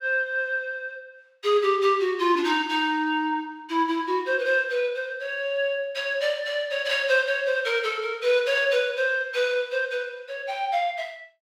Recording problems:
none

